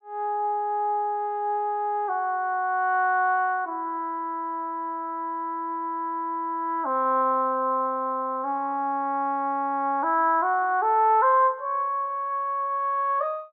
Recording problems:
none

